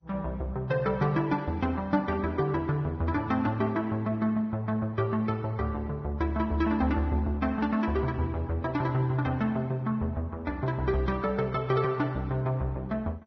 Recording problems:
lossy codec; MP2, then Vorbis, log-spectral distance 2 dB, nothing above 5.8 kHz

